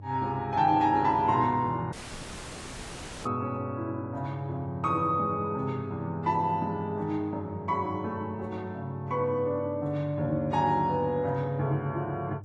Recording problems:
lossy compression; AAC, log-spectral distance 2 dB
hum; 50 Hz, harmonics up to 600 Hz, SNR 15 dB
audio cutting out; at 2 s for 1.5 s

